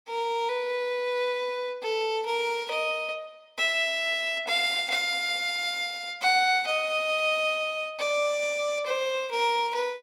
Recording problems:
none

